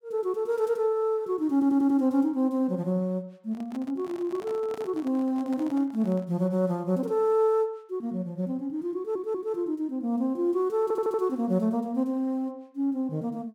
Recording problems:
stutter; at 1.5 s, at 9 s and at 11 s
handling noise; from 3.5 to 6.5 s; peak -12 dB vs average level

